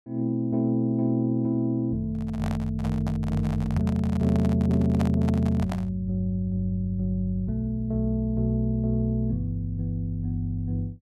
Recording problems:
handling noise; from 2 to 6 s; peak -2 dB vs average level

